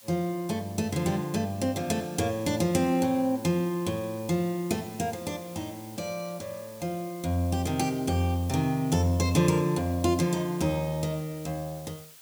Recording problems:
hiss; slope +2 dB per octave, SNR 20 dB

